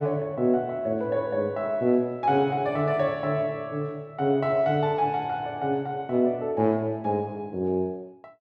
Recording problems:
none

